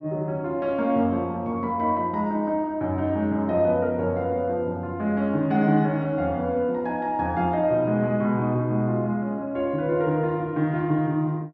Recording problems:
none

